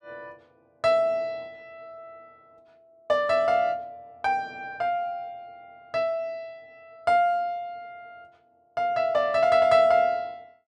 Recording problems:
none

